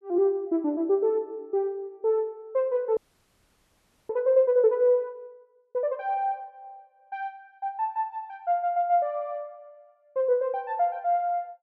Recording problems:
frozen audio; at 3 s for 1 s

